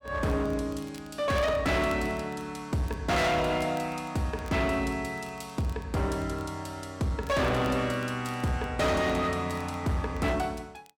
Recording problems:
distortion; hard clipping, signal-to-distortion ratio 6 dB
crackling; vinyl, SNR 27 dB

